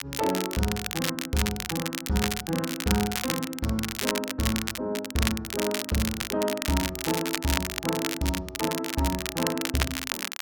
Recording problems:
crackling; vinyl, SNR 2 dB

